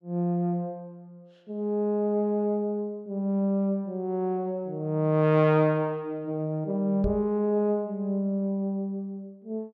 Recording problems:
knock on the microphone; at 7 s; peak -2 dB vs average level

